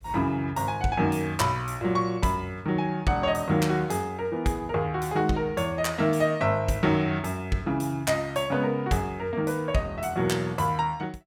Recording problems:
none

